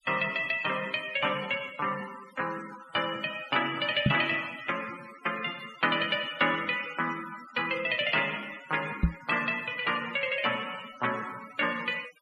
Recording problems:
denoising artefacts; signal-to-artefact ratio 17 dB
microphone thump; at 4 s and at 9 s; peak +8 dB vs average level

